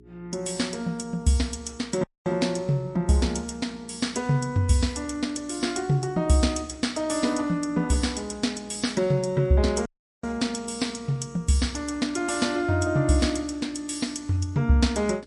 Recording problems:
lossy codec; MP3, log-spectral distance 2 dB
hum; 60 Hz, harmonics up to 420 Hz, SNR 26 dB
audio cutting out; at 2 s and at 10 s

